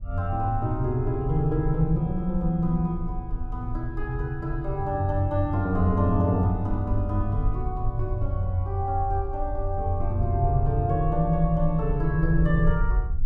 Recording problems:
wind on the microphone; below 58 Hz, SNR 7 dB

